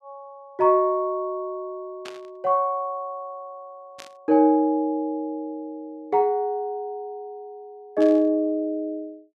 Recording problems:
burst of static; at 2 s, at 4 s and at 8 s; peak -11 dB vs average level

